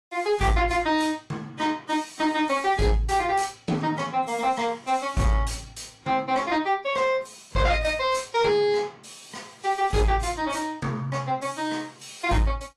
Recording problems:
codec artefacts; AAC, log-spectral distance 4 dB, nothing above 11.3 kHz
distorted audio; soft clipping, signal-to-distortion ratio 11 dB

